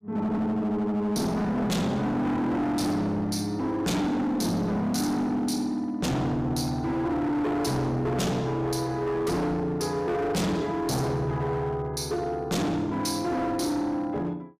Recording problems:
distorted audio; hard clipping, uneven, signal-to-distortion ratio 6 dB

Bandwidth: 15 kHz